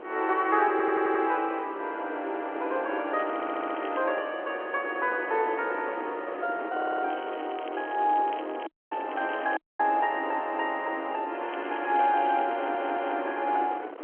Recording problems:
telephone audio; 280 Hz to 3.4 kHz, G.711
wind noise; below 860 Hz, SNR 11 dB
stutter; 4 times, first at 0.5 s
crackling; at 3 s, from 7 to 9.5 s and from 11 to 13 s; loose cable, SNR 21 dB
dropout; at 8.5 s and at 9.5 s

